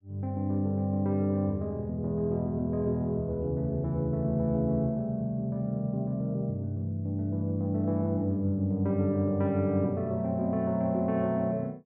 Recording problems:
none

